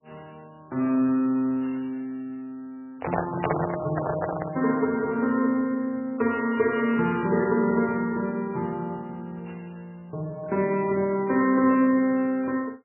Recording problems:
lossy codec; MP3, log-spectral distance 3 dB, nothing above 2.8 kHz
microphone handling noise; from 3 to 4.5 s; peak +2 dB vs average level

